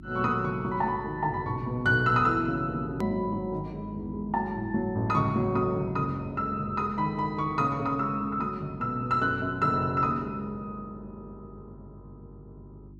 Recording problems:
hum; 50 Hz, harmonics up to 350 Hz, SNR 19 dB
hard cut with a click; at 3 s

